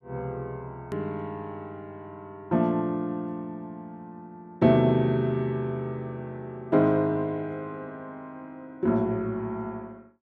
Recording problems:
click at an edit; at 1 s

